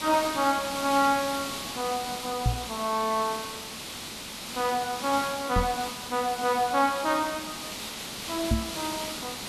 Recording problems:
hiss; SNR 6 dB
microphone thump; at 2.5 s, at 5.5 s and at 8.5 s; peak +6 dB vs average level

